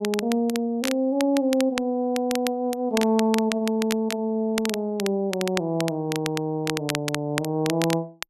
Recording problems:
crackle; vinyl, SNR 9 dB

